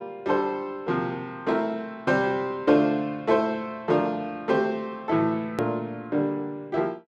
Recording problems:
click at an edit; at 5.5 s

